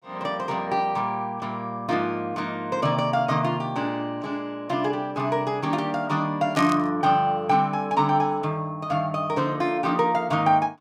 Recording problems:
burst of static; at 6.5 s; peak -4 dB vs average level

